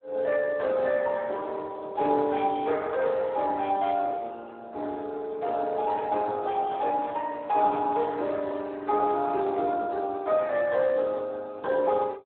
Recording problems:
phone line; 300 Hz to 3.8 kHz, Speex

